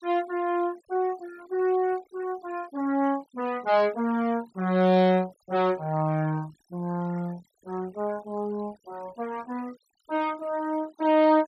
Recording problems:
denoising artefacts; signal-to-artefact ratio 23 dB

